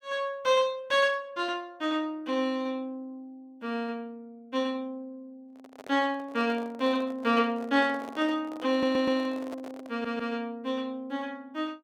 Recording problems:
microphone handling noise; from 5.5 to 10 s; peak -9 dB vs average level
stutter; at 8.5 s and at 10 s

